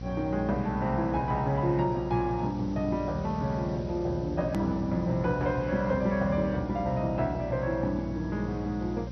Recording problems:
codec artefacts; MP2, log-spectral distance 4 dB, nothing above 13.1 kHz
electrical hum; 60 Hz, harmonics up to 540 Hz, SNR 10 dB
hiss; slope 0 dB per octave, SNR 27 dB
click at an edit; at 4.5 s

